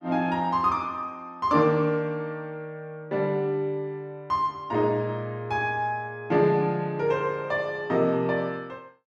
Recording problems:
none

